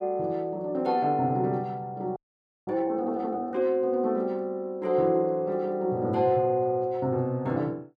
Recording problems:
audio freezing; at 2 s for 0.5 s

